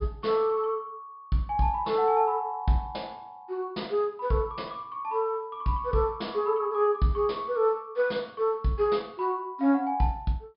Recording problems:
treble missing; nothing above 5.5 kHz

